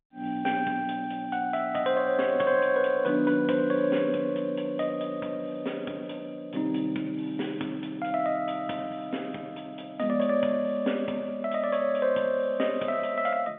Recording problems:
phone line; 190 Hz to 3.6 kHz, G.711

